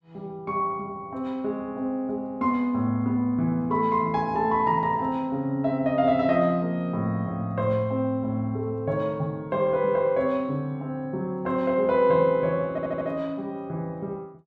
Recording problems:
audio stuttering; at 13 s

